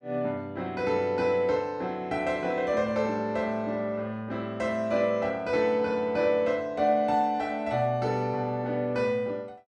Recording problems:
none

